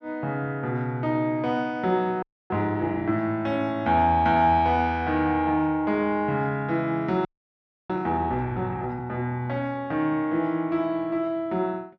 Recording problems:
audio freezing; at 2 s and at 7.5 s for 0.5 s

